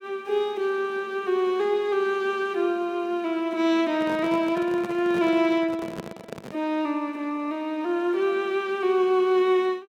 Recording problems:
handling noise; from 4 to 6.5 s; peak -5 dB vs average level

